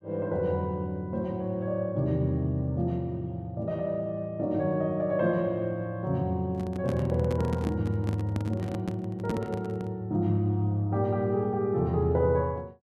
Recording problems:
handling noise; from 6.5 to 10 s; peak 0 dB vs average level

